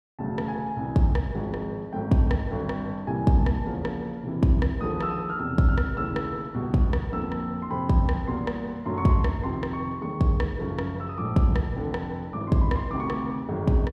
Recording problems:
none

